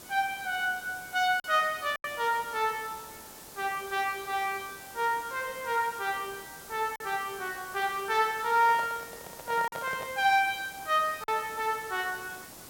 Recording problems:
hiss; SNR 15 dB
packet loss; 2% of the sound replaced, filled with silence
handling noise; from 8.5 to 10 s; peak -7 dB vs average level

